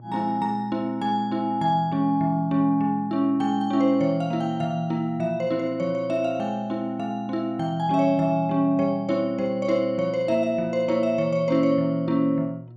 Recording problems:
hum; 60 Hz, harmonics up to 720 Hz, SNR 21 dB

